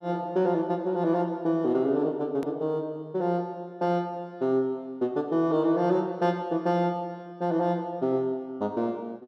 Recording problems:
click at an edit; at 2.5 s

